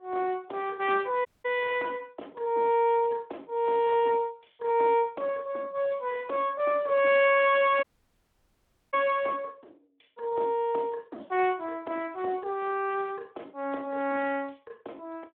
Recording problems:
phone line; 240 Hz to 3.7 kHz, Speex
audio cutting out; at 1.5 s and at 8 s for 1 s

